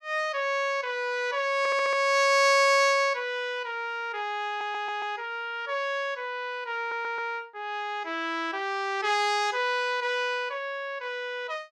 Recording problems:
audio stuttering; at 1.5 s, at 4.5 s and at 7 s

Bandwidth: 15 kHz